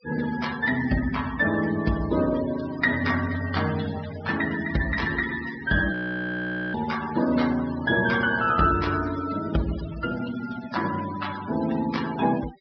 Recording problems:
treble missing; nothing above 5.5 kHz
denoising artefacts; signal-to-artefact ratio 13 dB
frozen audio; at 6 s for 1 s

